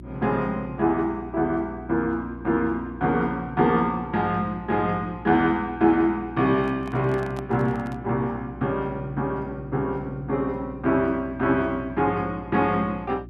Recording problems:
hum; 60 Hz, harmonics up to 360 Hz, SNR 16 dB
microphone handling noise; from 6.5 to 8 s; peak -9 dB vs average level

